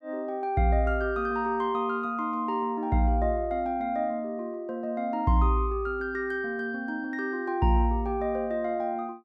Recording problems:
none

